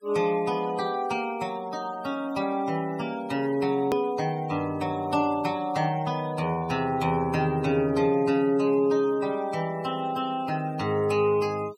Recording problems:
noise reduction artefacts; signal-to-artefact ratio 19 dB
hard cut with a click; at 4 s

